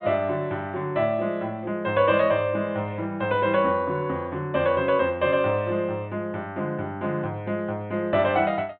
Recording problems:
treble missing; nothing above 4 kHz

